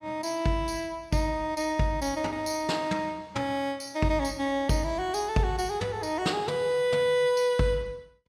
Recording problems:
none

